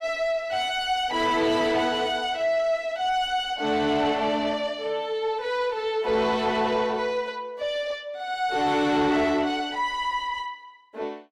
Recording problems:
distortion; soft clipping, signal-to-distortion ratio 10 dB

